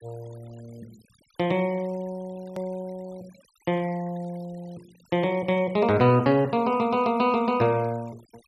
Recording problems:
noise reduction artefacts; signal-to-artefact ratio 27 dB
edit click; at 2.5 s

